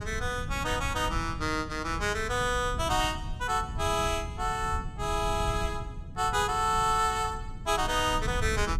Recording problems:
low-frequency rumble; below 120 Hz, SNR 9 dB

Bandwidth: 15 kHz